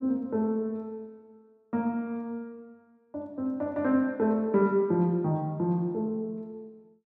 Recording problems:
none

